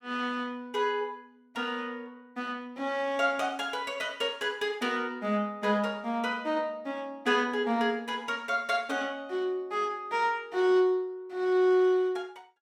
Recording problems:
none

